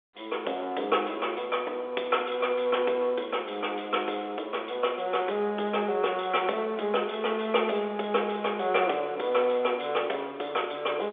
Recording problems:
phone line; 320 Hz to 3.6 kHz, G.711

